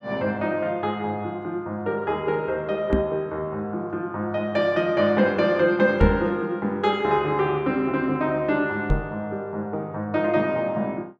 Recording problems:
microphone thump; at 3 s, at 6 s and at 9 s; peak +6 dB vs average level

